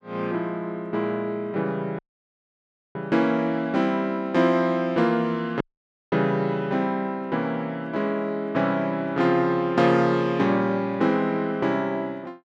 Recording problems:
audio cutting out; at 2 s for 1 s and at 5.5 s for 0.5 s

